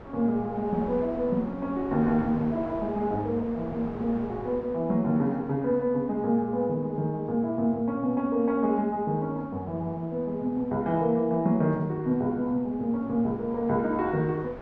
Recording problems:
wind noise; below 860 Hz, SNR 17 dB

